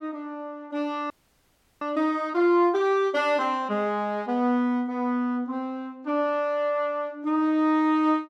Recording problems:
frozen audio; at 1 s for 0.5 s

